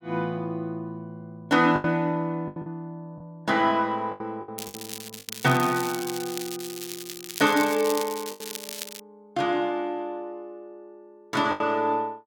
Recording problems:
packet loss; 6% of the sound replaced, filled with the last packet
crackling; from 4.5 to 9 s; loose cable, SNR 10 dB

